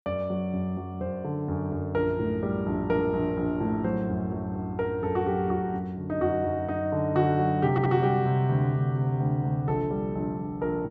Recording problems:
audio stuttering; at 7.5 s

